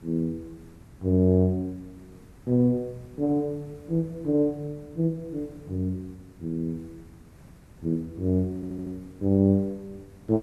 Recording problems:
background hiss; slope -6 dB per octave, SNR 24 dB
stutter; at 8.5 s

